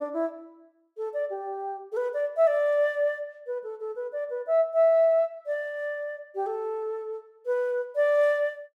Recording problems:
none

